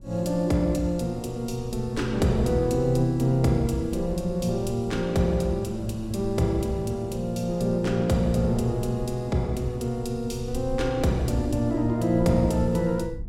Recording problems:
rumble; below 92 Hz, SNR 15 dB

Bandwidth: 16.5 kHz